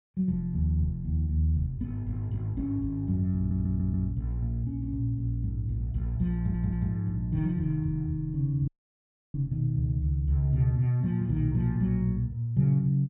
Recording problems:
treble cut off; nothing above 4 kHz
audio stuttering; at 3.5 s and at 6.5 s
dropout; at 8.5 s for 0.5 s

